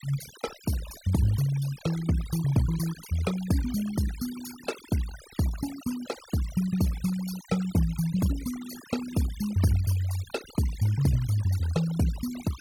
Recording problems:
denoising artefacts; signal-to-artefact ratio 15 dB

